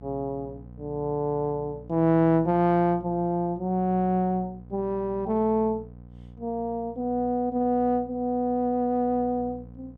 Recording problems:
hum; 60 Hz, harmonics up to 780 Hz, SNR 20 dB

